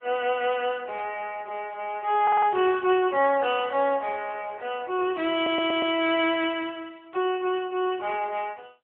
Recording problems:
telephone audio; 280 Hz to 3.3 kHz, AMR-NB
burst of static; at 1 s, at 2.5 s and at 7 s; peak -17 dB vs average level
stutter; at 2 s and at 5.5 s

